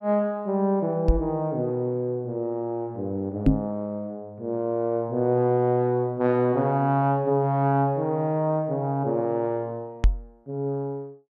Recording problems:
microphone thump; at 1 s, at 3.5 s and at 10 s; peak +10 dB vs average level

